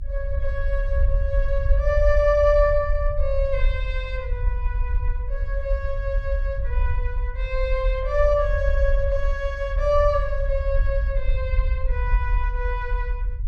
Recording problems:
low-frequency rumble; below 58 Hz, SNR 1 dB

